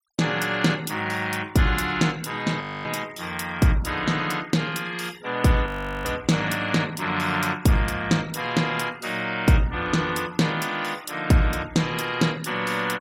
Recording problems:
denoising artefacts; signal-to-artefact ratio 21 dB
frozen audio; at 2.5 s and at 5.5 s

